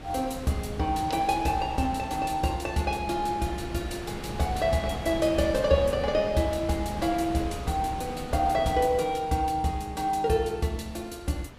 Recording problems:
wind noise; below 800 Hz, SNR 12 dB

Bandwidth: 15.5 kHz